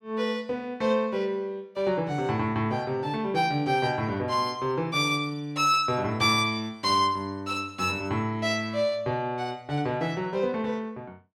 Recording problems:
none

